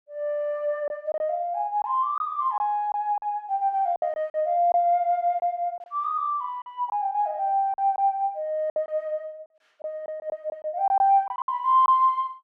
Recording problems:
lost packets; 7% of the sound replaced, filled with silence

